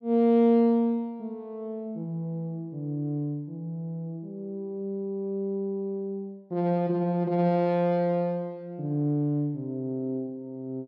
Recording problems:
none

